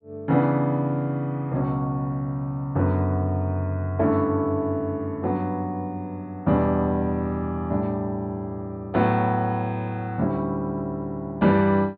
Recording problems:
treble missing; nothing above 4.7 kHz

